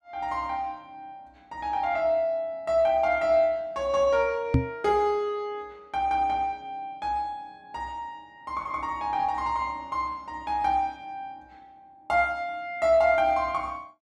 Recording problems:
knock on the microphone; at 4.5 s; peak +8 dB vs average level

